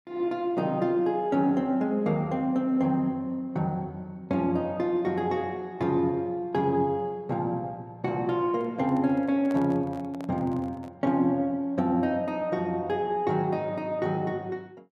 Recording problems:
handling noise; from 8.5 to 11 s; peak -9 dB vs average level

